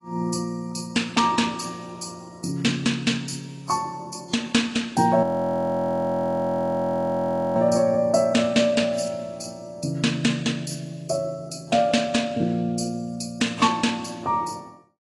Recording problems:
codec artefacts; AAC, log-spectral distance 4 dB, nothing above 10.7 kHz
frozen audio; at 5 s for 2.5 s

